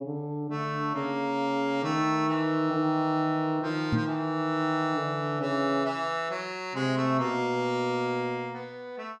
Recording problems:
microphone thump; at 4 s; peak +5 dB vs average level

